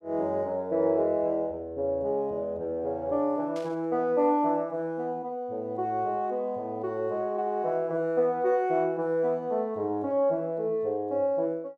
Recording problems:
burst of static; at 3.5 s; peak -14 dB vs average level

